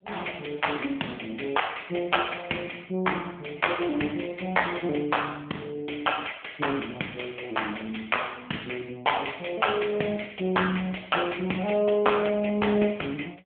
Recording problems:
phone line; 240 Hz to 3.4 kHz, AMR-NB

